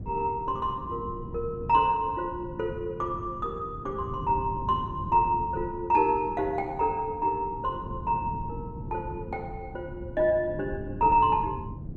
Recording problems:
wind noise; below 200 Hz, SNR 12 dB

